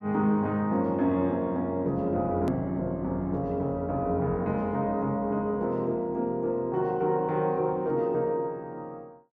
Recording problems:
hard cut with a click; at 2.5 s

